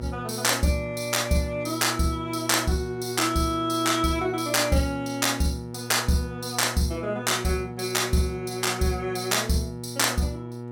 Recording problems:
hum; 60 Hz, harmonics up to 1.4 kHz, SNR 11 dB

